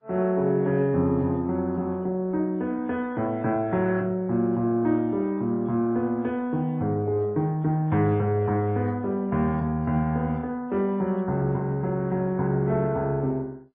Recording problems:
lossy compression; MP2, then MP3, log-spectral distance 2 dB, nothing above 11.3 kHz

